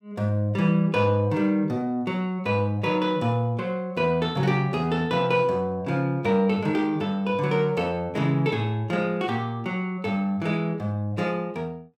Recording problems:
none

